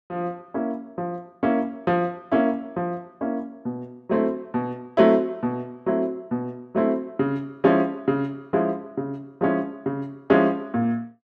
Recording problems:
none

